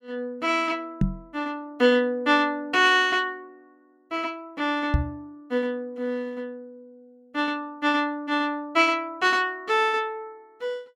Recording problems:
knock on the microphone; at 1 s and at 5 s; peak +6 dB vs average level

